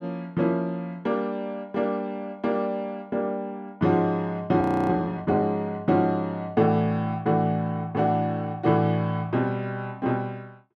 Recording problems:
audio freezing; at 4.5 s

